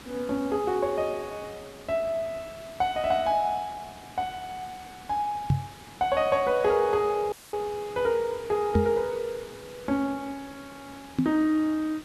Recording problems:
background hiss; SNR 18 dB
microphone bump; at 5.5 s, at 9 s and at 11 s; peak +7 dB vs average level
audio cutting out; at 7.5 s

